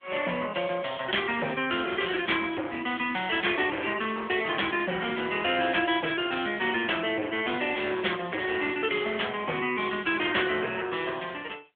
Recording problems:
telephone audio; 280 Hz to 3.4 kHz, AMR-NB
distortion; hard clipping, signal-to-distortion ratio 11 dB

